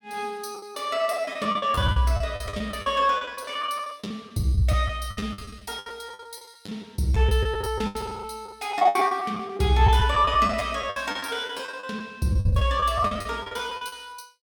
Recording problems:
lost packets; 18% of the sound replaced, filled with the last packet

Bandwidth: 17.5 kHz